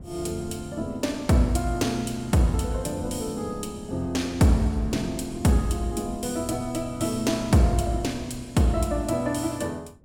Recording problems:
wind noise; below 210 Hz, SNR 17 dB

